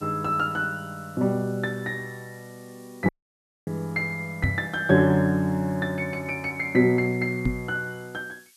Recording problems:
hiss; SNR 27 dB
audio cutting out; at 3 s for 0.5 s
microphone bump; at 4.5 s and at 7.5 s; peak +4 dB vs average level

